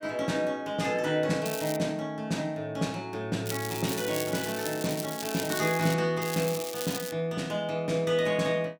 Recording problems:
crackle; at 1.5 s, from 3.5 to 6 s and at 6 s; loose cable, SNR 7 dB

